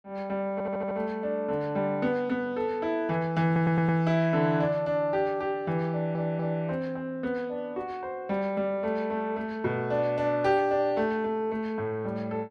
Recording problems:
stutter; at 0.5 s, at 3.5 s and at 6 s

